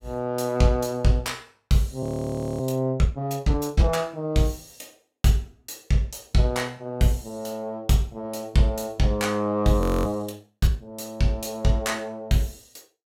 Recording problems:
audio freezing; at 2 s for 0.5 s and at 10 s

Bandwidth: 16.5 kHz